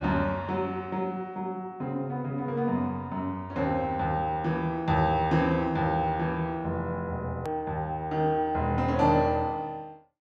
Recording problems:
edit click; at 7.5 s

